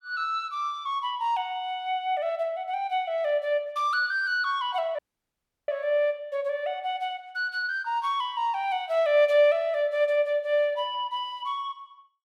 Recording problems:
audio cutting out; at 5 s for 0.5 s

